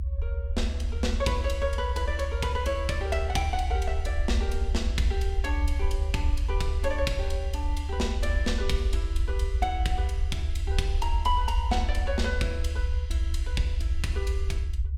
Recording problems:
rumble; below 72 Hz, SNR -2 dB

